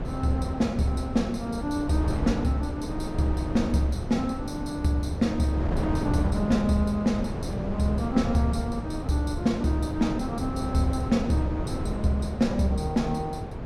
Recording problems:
wind noise; below 370 Hz, SNR 5 dB

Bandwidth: 16.5 kHz